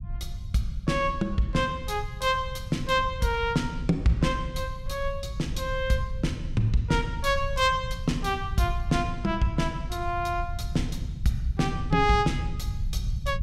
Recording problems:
rumble; below 94 Hz, SNR 8 dB

